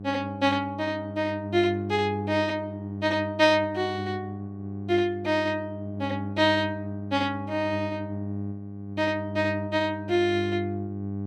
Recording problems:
hum; 50 Hz, harmonics up to 800 Hz, SNR 8 dB

